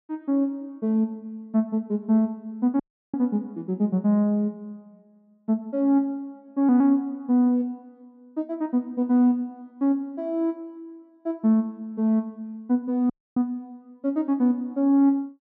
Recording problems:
dropout; at 3 s and at 13 s

